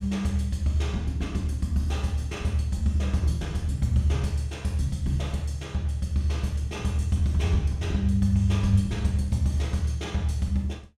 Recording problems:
none

